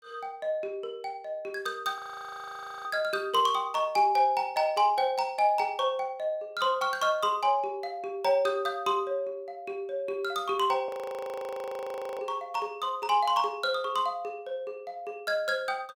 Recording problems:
frozen audio; at 2 s for 1 s and at 11 s for 1.5 s

